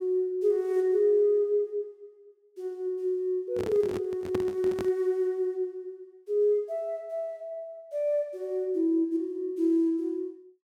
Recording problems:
handling noise; from 3.5 to 5 s; peak -1 dB vs average level

